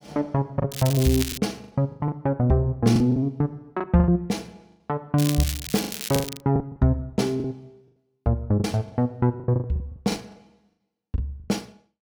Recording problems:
packet loss; 13% of the sound replaced, filled with the last packet
crackle; at 0.5 s and from 5 to 6.5 s; loose cable, SNR 7 dB

